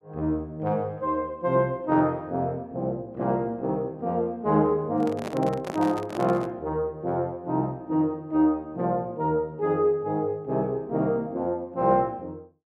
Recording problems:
handling noise; from 5 to 6.5 s; peak -4 dB vs average level

